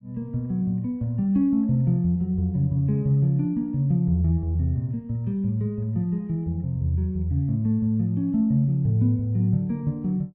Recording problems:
none

